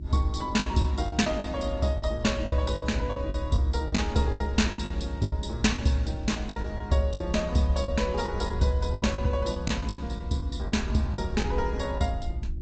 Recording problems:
codec artefacts; AAC, then G.722, log-spectral distance 3 dB, nothing above 7.8 kHz
electrical hum; 50 Hz, harmonics up to 350 Hz, SNR 16 dB
rumble; below 70 Hz, strongest tone 56 Hz, SNR 6 dB
packet loss; 12% of the sound replaced, filled with the last packet

